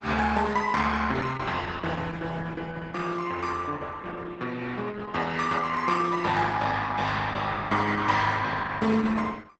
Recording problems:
lossy compression; Opus, log-spectral distance 5 dB, nothing above 8 kHz

